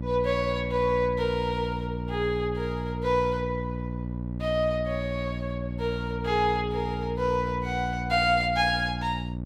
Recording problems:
hum; 60 Hz, harmonics up to 600 Hz, SNR 5 dB

